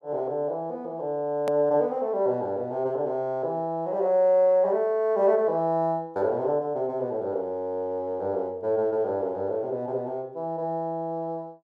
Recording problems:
hard cut with a click; at 1.5 s

